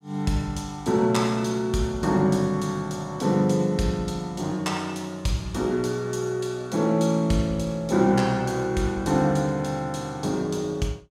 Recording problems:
none

